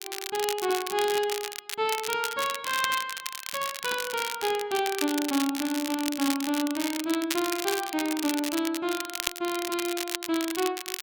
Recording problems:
crackle; vinyl, SNR 4 dB

